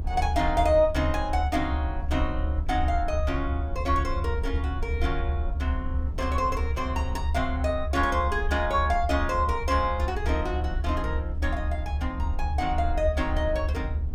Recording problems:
rumble; below 74 Hz, strongest tone 72 Hz, SNR 2 dB
wind on the microphone; below 86 Hz, SNR 10 dB

